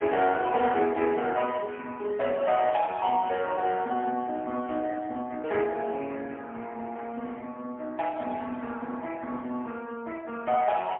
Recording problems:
telephone audio; 190 Hz to 3.3 kHz, AMR-NB, then MP3

